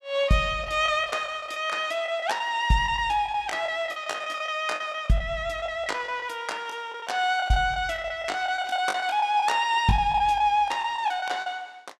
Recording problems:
packet loss; 13% of the sound replaced, filled with the last packet

